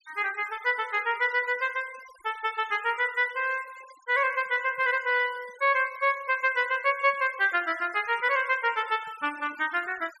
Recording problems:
denoising artefacts; signal-to-artefact ratio 21 dB

